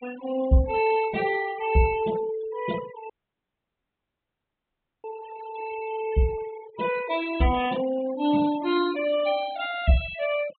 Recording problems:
treble missing; nothing above 4 kHz
denoising artefacts; signal-to-artefact ratio 15 dB
dropout; at 3 s for 2 s

